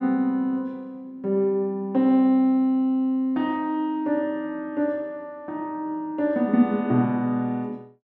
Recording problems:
none

